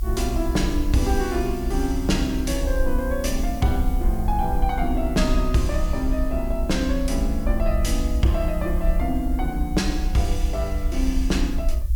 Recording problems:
hiss; slope +3 dB per octave, SNR 21 dB
rumble; below 60 Hz, SNR 2 dB

